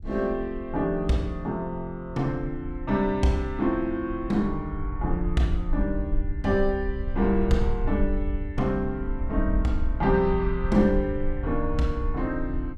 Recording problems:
rumble; below 60 Hz, SNR 6 dB

